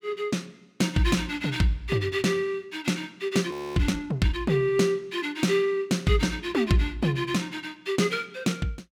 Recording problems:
audio freezing; at 3.5 s

